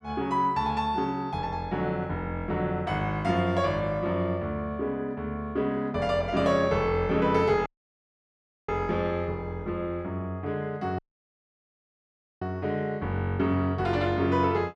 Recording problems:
audio cutting out; at 7.5 s for 1 s and at 11 s for 1.5 s

